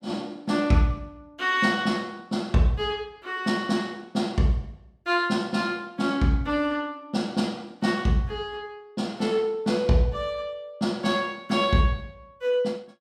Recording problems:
none

